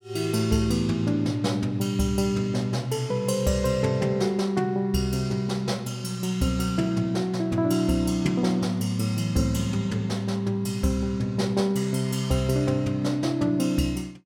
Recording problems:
none

